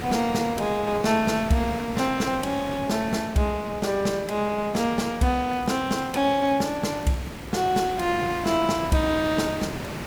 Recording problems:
hiss; slope -5 dB per octave, SNR 11 dB
crackle; from 5.5 to 8 s; loose cable, SNR 28 dB

